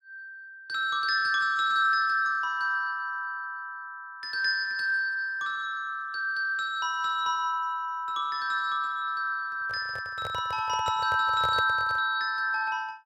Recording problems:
microphone handling noise; from 9.5 to 12 s; peak -5 dB vs average level

